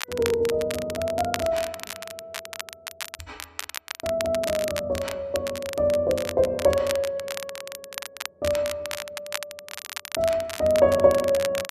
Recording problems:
crackling; vinyl, SNR 11 dB

